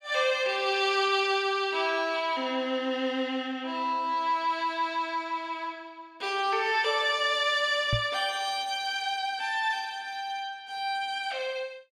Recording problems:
microphone bump; at 8 s; peak +3 dB vs average level

